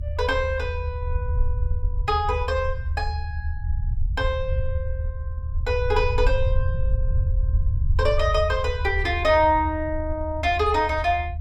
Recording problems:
low-frequency rumble; below 78 Hz, SNR 3 dB

